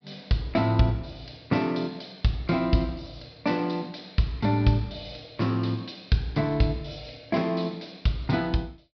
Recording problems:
low-pass filter; nothing above 5.5 kHz

